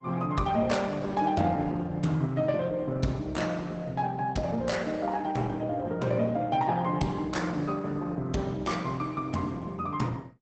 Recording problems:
lossy codec; Opus, log-spectral distance 3 dB, nothing above 8 kHz

